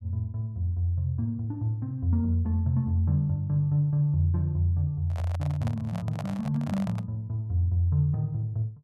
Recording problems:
microphone handling noise; from 5 to 7 s; peak -6 dB vs average level

